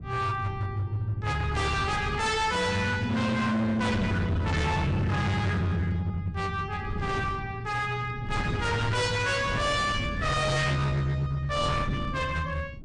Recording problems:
lossy codec; MP3, log-spectral distance 2 dB, nothing above 8.7 kHz
distortion; hard clipping, signal-to-distortion ratio 7 dB
wind on the microphone; below 240 Hz, SNR 9 dB

